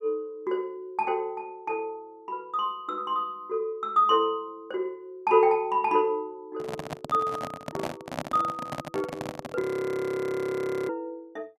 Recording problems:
microphone handling noise; from 6.5 to 9.5 s; peak 0 dB vs average level
audio freezing; at 9.5 s for 1.5 s

